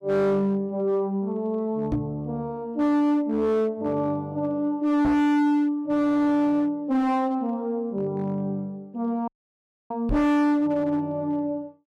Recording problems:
distorted audio; hard clipping, signal-to-distortion ratio 7 dB
microphone thump; at 2 s, at 5 s and at 10 s; peak +1 dB vs average level
audio cutting out; at 9.5 s for 0.5 s

